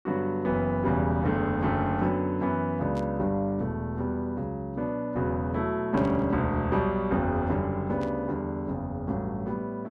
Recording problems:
burst of static; at 3 s, at 6 s and at 8 s; peak -14 dB vs average level

